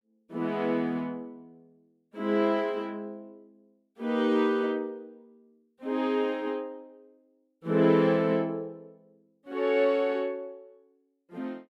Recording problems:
none

